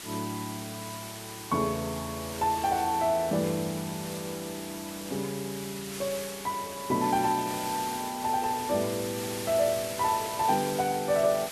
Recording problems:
background hiss; slope 0 dB per octave, SNR 9 dB

